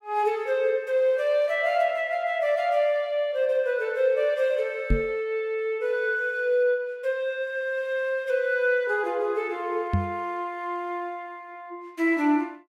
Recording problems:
microphone bump; at 5 s and at 10 s; peak +5 dB vs average level

